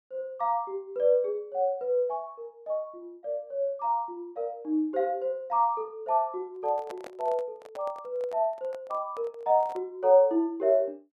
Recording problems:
microphone handling noise; from 6.5 to 10 s; peak -8 dB vs average level

